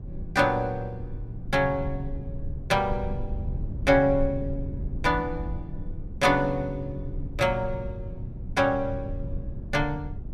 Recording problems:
rumble; below 98 Hz, SNR 10 dB

